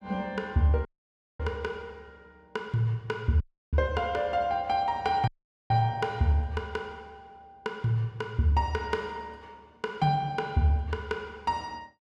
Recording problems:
audio cutting out; at 1 s for 0.5 s, at 3.5 s and at 5.5 s

